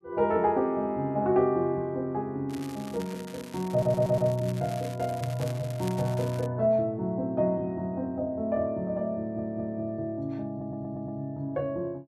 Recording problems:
crackle; from 2.5 to 6.5 s; loose cable, SNR 18 dB
audio stuttering; at 3.5 s, at 9 s and at 11 s

